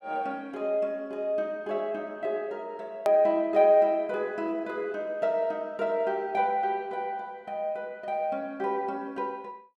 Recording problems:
edit click; at 3 s

